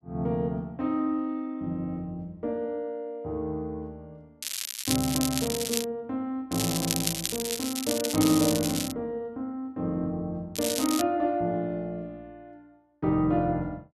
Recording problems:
crackle; from 4.5 to 6 s, from 6.5 to 9 s and at 11 s; loose cable, SNR 1 dB

